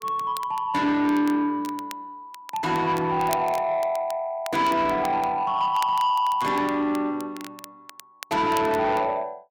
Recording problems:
distorted audio; soft clipping, signal-to-distortion ratio 11 dB
crackling; vinyl, SNR 19 dB

